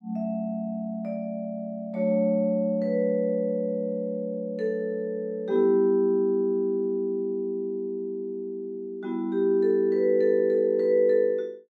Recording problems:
none

